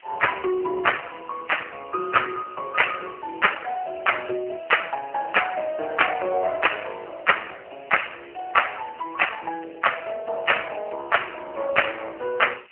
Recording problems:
telephone audio; 300 Hz to 3 kHz, AMR-NB
hiss; SNR 27 dB

